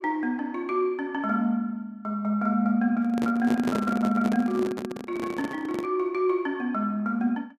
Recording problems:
handling noise; from 3 to 6 s; peak +1 dB vs average level

